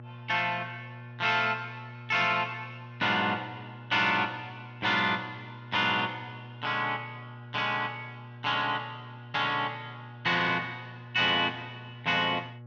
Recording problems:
electrical hum; 60 Hz, harmonics up to 1.1 kHz, SNR 17 dB

